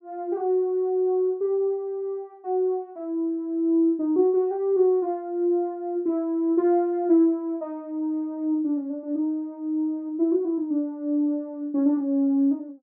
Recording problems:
none

